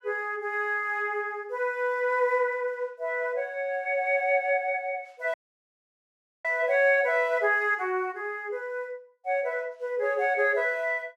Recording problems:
dropout; at 5.5 s for 1 s

